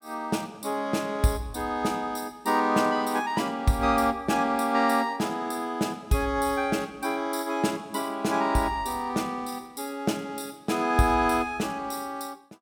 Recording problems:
none

